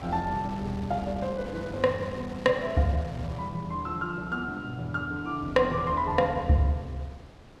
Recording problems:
wind on the microphone; below 1.1 kHz, SNR 17 dB

